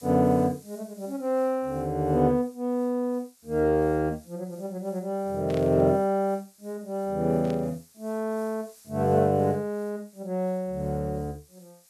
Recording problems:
background hiss; SNR 27 dB
static burst; at 5.5 s and at 7.5 s; peak -12 dB vs average level

